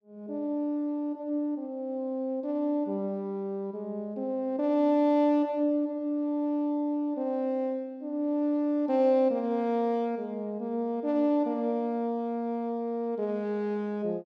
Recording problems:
none

